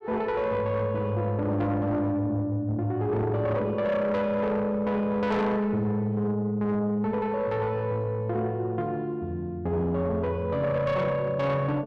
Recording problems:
distortion; soft clipping, signal-to-distortion ratio 11 dB

